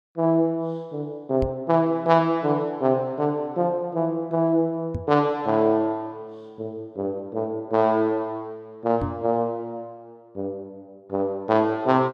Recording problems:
knock on the microphone; at 1.5 s, at 5 s and at 9 s; peak -2 dB vs average level

